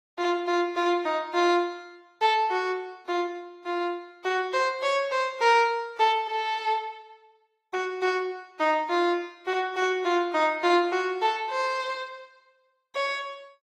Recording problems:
lossy codec; AAC, log-spectral distance 2 dB

